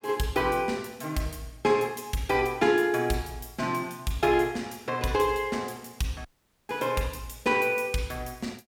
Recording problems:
dropout; at 6.5 s

